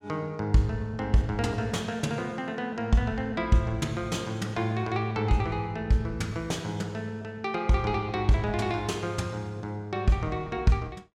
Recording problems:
none

